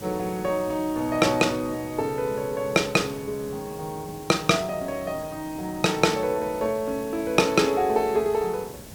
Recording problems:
hiss; SNR 16 dB

